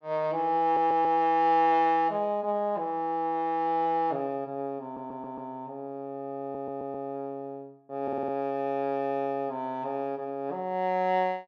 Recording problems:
stutter; 4 times, first at 0.5 s

